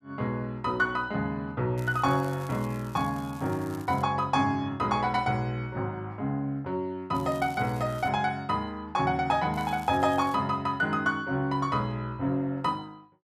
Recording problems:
crackle; from 2 to 4 s, at 7 s and at 9.5 s; loose cable, SNR 23 dB

